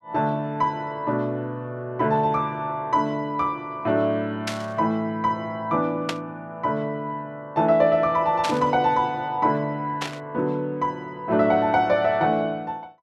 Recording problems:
burst of static; 4 times, first at 4.5 s; peak +1 dB vs average level

